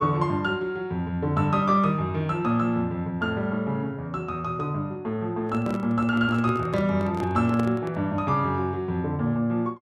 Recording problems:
microphone handling noise; from 5.5 to 8 s; peak -4 dB vs average level

